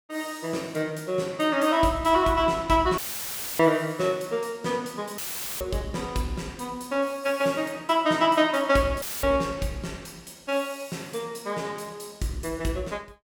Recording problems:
dropout; at 3 s for 0.5 s, at 5 s and at 9 s; filled with static

